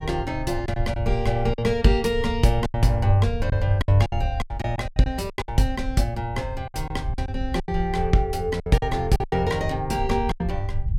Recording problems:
low-frequency rumble; below 82 Hz, SNR 8 dB
packet loss; 11% of the sound replaced, filled with silence

